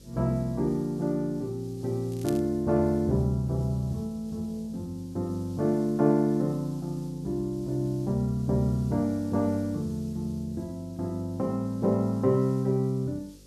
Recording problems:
hum; 50 Hz, harmonics up to 550 Hz, SNR 25 dB
background hiss; SNR 27 dB
crackling; at 2 s; loose cable, SNR 19 dB

